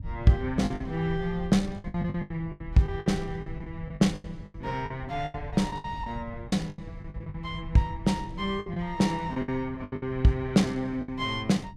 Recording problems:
rumble; below 120 Hz, SNR 14 dB
lost packets; 14% of the sound replaced, filled with the last packet

